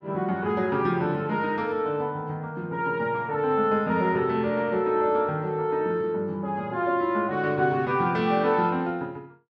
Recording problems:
none

